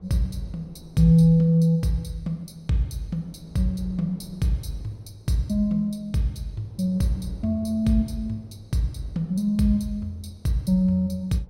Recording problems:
wind on the microphone; below 330 Hz, SNR 26 dB

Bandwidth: 16 kHz